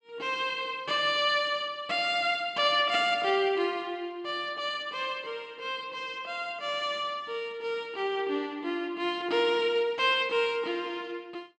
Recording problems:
none

